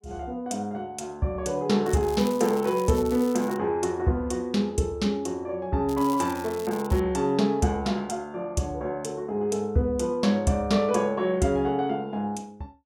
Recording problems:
crackling; from 2 to 3.5 s and from 6 to 7 s; loose cable, SNR 18 dB

